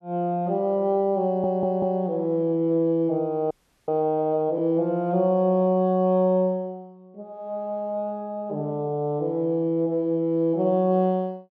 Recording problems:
stutter; at 1.5 s
audio freezing; at 3.5 s

